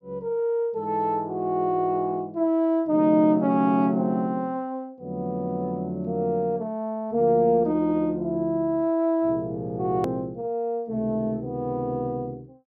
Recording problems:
edit click; at 10 s

